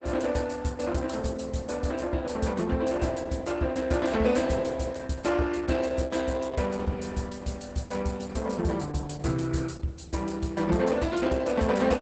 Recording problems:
codec artefacts; Opus, log-spectral distance 6 dB, nothing above 8 kHz

